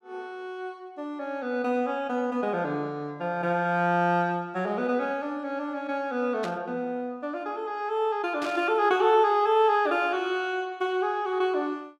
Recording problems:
static burst; at 6.5 s and at 8.5 s; peak -7 dB vs average level

